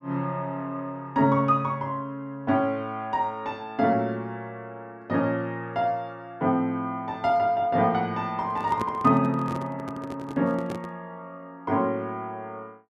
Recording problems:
microphone handling noise; from 8.5 to 11 s; peak -2 dB vs average level

